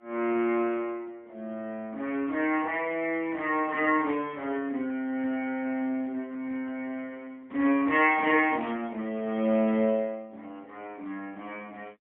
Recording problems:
telephone audio; 240 Hz to 3.4 kHz, AMR-NB, then MP3

